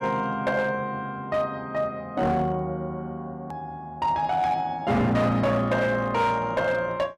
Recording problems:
distortion; hard clipping, signal-to-distortion ratio 11 dB
click at an edit; at 3.5 s

